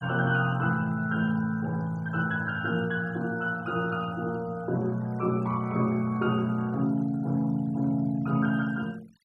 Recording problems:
denoising artefacts; signal-to-artefact ratio 25 dB

